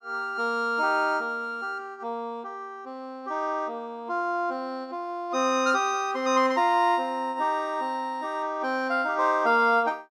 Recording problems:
none

